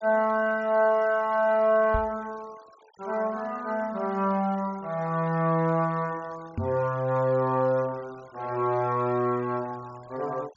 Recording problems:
treble cut off; nothing above 7.2 kHz
denoising artefacts; signal-to-artefact ratio 26 dB
microphone bump; at 2 s and at 6.5 s; peak -1 dB vs average level

